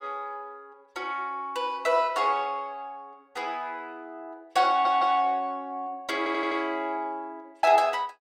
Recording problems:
stutter; at 4.5 s and at 6 s

